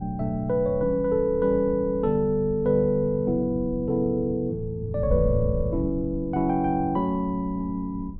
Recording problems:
wind on the microphone; below 120 Hz, SNR 11 dB

